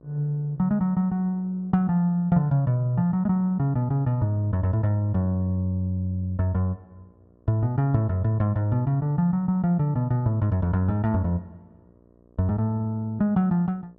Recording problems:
hum; 60 Hz, harmonics up to 1.2 kHz, SNR 32 dB

